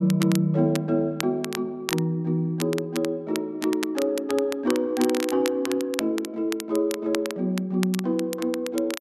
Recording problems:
crackle; vinyl, SNR 11 dB

